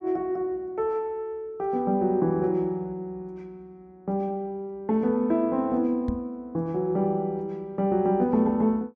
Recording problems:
microphone bump; at 6 s; peak 0 dB vs average level

